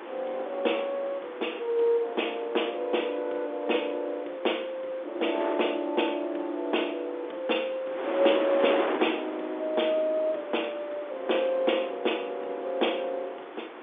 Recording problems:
phone line; 280 Hz to 3.7 kHz, G.711
wind on the microphone; below 1.2 kHz, SNR 9 dB

